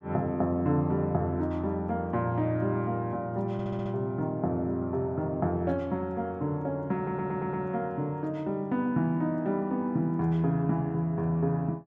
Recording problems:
audio stuttering; at 3.5 s and at 7 s

